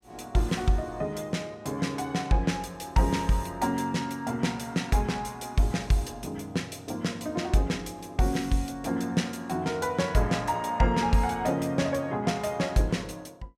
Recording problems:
none

